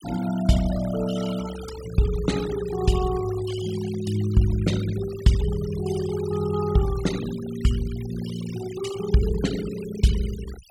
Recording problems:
denoising artefacts; signal-to-artefact ratio 14 dB

